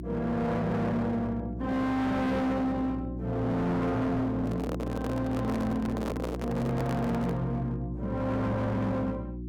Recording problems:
distortion; hard clipping, signal-to-distortion ratio 8 dB
hum; 60 Hz, harmonics up to 360 Hz, SNR 8 dB
handling noise; from 4.5 to 7.5 s; peak 0 dB vs average level

